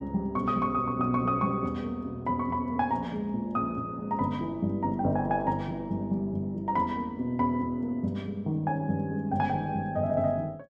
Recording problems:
none

